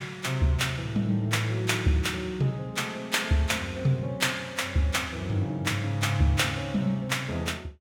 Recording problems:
none

